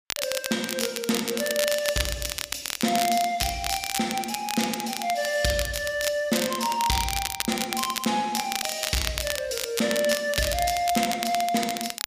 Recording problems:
crackle; vinyl, SNR 4 dB

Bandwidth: 15 kHz